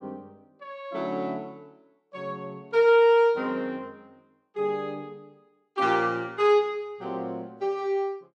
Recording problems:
none

